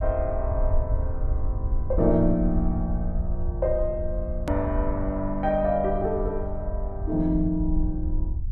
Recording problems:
rumble; below 70 Hz, SNR 3 dB
edit click; at 4.5 s

